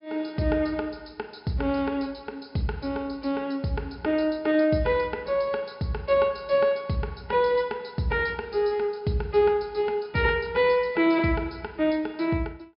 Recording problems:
treble missing; nothing above 5.5 kHz

